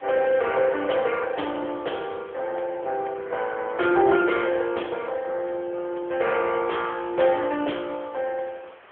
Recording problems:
phone line; 300 Hz to 3.3 kHz, AMR-NB
background hiss; SNR 25 dB

